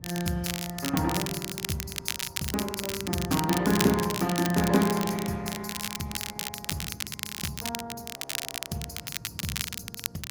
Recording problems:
lossy codec; Opus, log-spectral distance 4 dB, nothing above 19 kHz
wind noise; below 200 Hz, SNR 15 dB
crackling; vinyl, SNR 4 dB
frozen audio; at 8 s for 0.5 s

